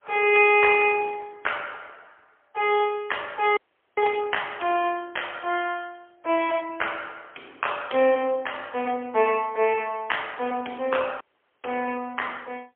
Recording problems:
telephone audio; 280 Hz to 3.3 kHz, AMR-NB, then MP3
dropout; at 3.5 s and at 11 s

